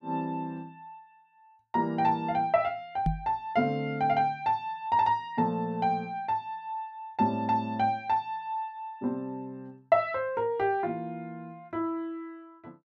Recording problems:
microphone thump; at 3 s; peak +4 dB vs average level

